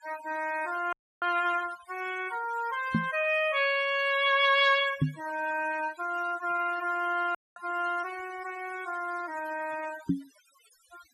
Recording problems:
denoising artefacts; signal-to-artefact ratio 18 dB
dropout; at 1 s and at 7.5 s
microphone thump; at 3 s, at 5 s and at 10 s; peak +6 dB vs average level

